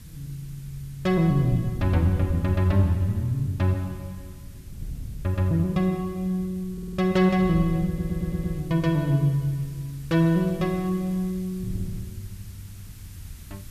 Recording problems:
background hiss; SNR 27 dB
wind noise; below 130 Hz, SNR 15 dB
stutter; at 6.5 s and at 8 s

